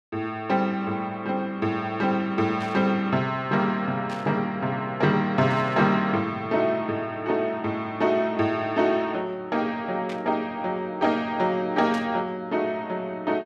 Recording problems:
static burst; 5 times, first at 2.5 s; peak -10 dB vs average level

